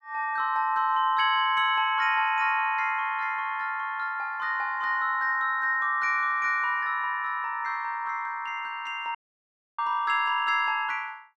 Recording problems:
dropout; at 9 s for 0.5 s

